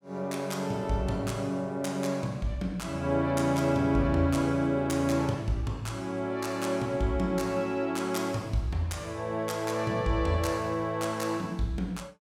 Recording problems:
none

